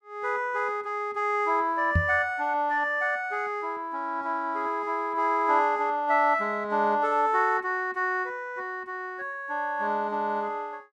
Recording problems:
knock on the microphone; at 2 s; peak +5 dB vs average level

